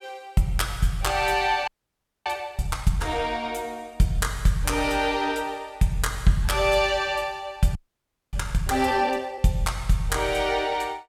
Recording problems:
frozen audio; at 1.5 s for 0.5 s and at 8 s for 0.5 s

